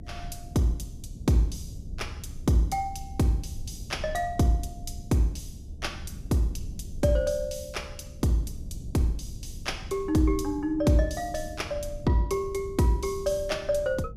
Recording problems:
rumble; below 110 Hz, SNR 13 dB

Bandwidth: 14.5 kHz